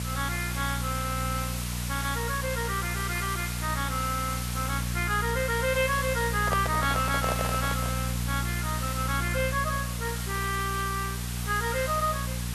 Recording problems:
hum; 60 Hz, harmonics up to 480 Hz, SNR 3 dB
background hiss; slope +1 dB per octave, SNR 5 dB
handling noise; from 6.5 to 8 s; peak +3 dB vs average level

